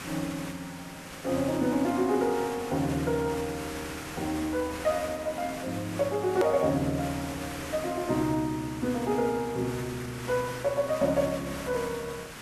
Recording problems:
hiss; SNR 11 dB
click at an edit; at 6.5 s

